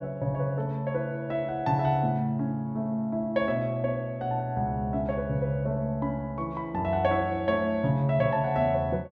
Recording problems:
none

